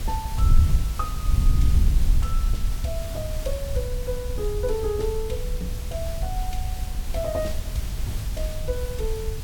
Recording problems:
hum; 50 Hz, harmonics up to 700 Hz, SNR 17 dB
background hiss; slope -2 dB per octave, SNR 7 dB
wind noise; below 70 Hz, SNR -5 dB
crackle; vinyl, SNR 28 dB

